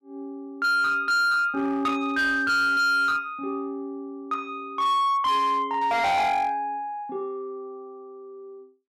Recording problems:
distorted audio; hard clipping, signal-to-distortion ratio 10 dB

